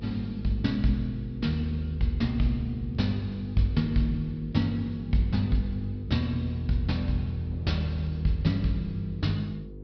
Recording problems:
treble cut off; nothing above 5.5 kHz
hum; 50 Hz, harmonics up to 500 Hz, SNR 15 dB
wind on the microphone; below 300 Hz, SNR 26 dB

